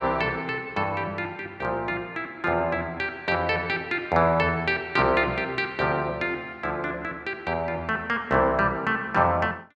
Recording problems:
none

